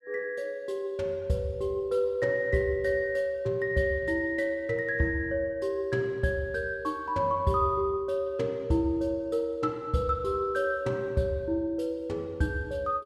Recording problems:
none

